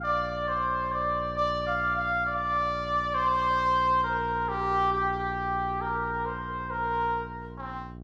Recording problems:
hum; 60 Hz, harmonics up to 780 Hz, SNR 12 dB

